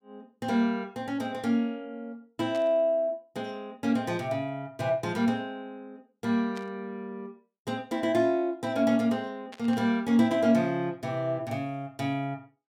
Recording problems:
burst of static; at 2.5 s, at 6.5 s and at 9.5 s; peak -12 dB vs average level

